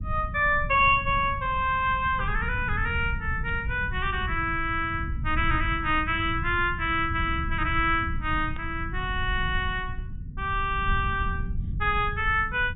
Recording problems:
treble missing; nothing above 4 kHz
low-frequency rumble; below 110 Hz, SNR 8 dB
static burst; at 3.5 s and at 8.5 s; peak -16 dB vs average level

